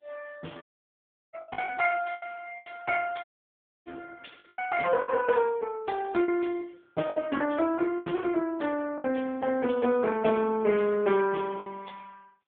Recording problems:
phone line; 170 Hz to 3.2 kHz, AMR-NB
packet loss; 7% of the sound replaced, filled with the last packet
audio cutting out; at 0.5 s for 0.5 s and at 3 s for 0.5 s

